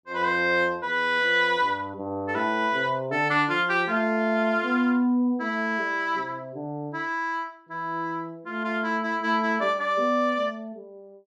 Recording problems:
none

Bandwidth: 12.5 kHz